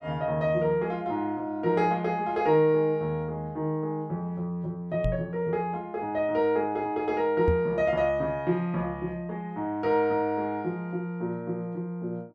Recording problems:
microphone thump; at 5 s and at 7.5 s; peak +4 dB vs average level

